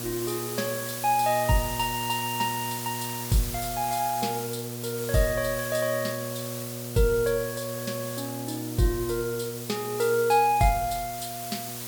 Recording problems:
hum; 60 Hz, harmonics up to 840 Hz, SNR 11 dB
hiss; slope +2 dB per octave, SNR 7 dB

